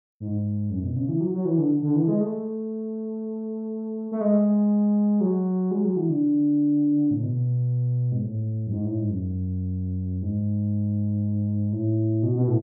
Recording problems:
none

